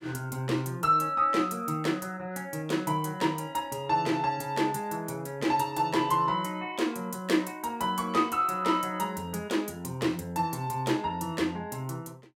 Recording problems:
none

